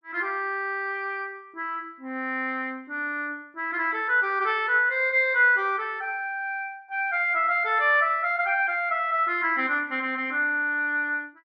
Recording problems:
none

